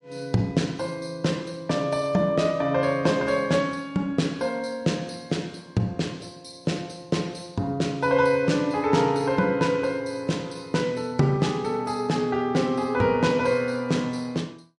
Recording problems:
lossy codec; MP3, log-spectral distance 2 dB, nothing above 10.7 kHz

